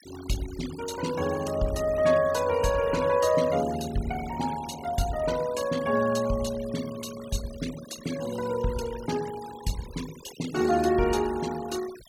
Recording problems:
noise reduction artefacts; signal-to-artefact ratio 15 dB

